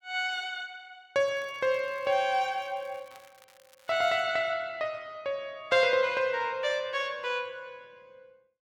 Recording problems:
crackle; from 1 to 4 s; loose cable, SNR 29 dB

